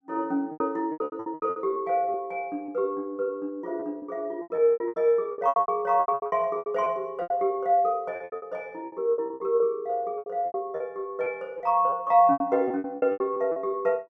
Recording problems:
lost packets; 18% of the sound replaced, filled with repeated pitch periods

